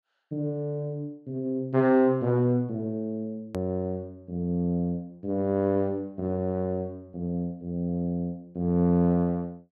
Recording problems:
edit click; at 3.5 s

